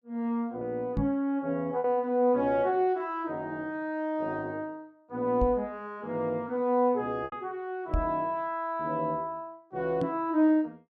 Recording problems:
packet loss; 1.4% of the sound replaced, filled with repeated pitch periods
microphone bump; 4 times, first at 1 s; peak +3 dB vs average level

